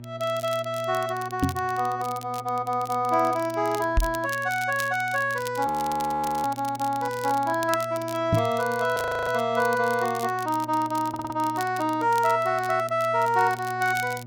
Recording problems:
hum; 60 Hz, harmonics up to 600 Hz, SNR 17 dB
crackle; vinyl, SNR 17 dB
microphone bump; at 1.5 s, at 4 s and at 8.5 s; peak +5 dB vs average level
audio freezing; at 5.5 s for 1 s and at 9 s
audio stuttering; at 11 s

